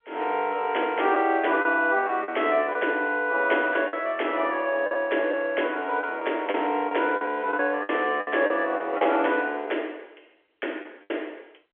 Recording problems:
telephone audio; 280 Hz to 3.3 kHz, G.711
lost packets; 6% of the sound replaced, filled with the last packet

